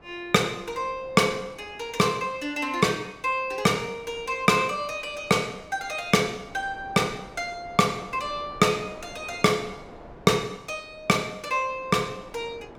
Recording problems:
wind on the microphone; below 820 Hz, SNR 22 dB

